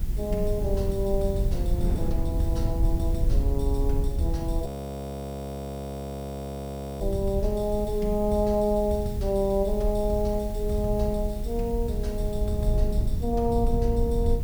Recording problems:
electrical hum; 50 Hz, harmonics up to 350 Hz, SNR 21 dB
hiss; slope 0 dB per octave, SNR 20 dB
low-frequency rumble; below 74 Hz, SNR 2 dB
wind noise; below 240 Hz, SNR 17 dB
frozen audio; at 4.5 s for 2.5 s

